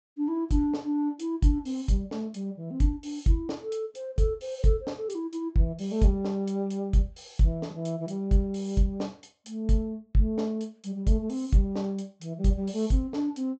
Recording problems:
treble cut off; nothing above 8 kHz

